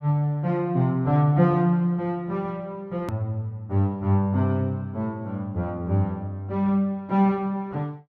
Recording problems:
click at an edit; at 3 s

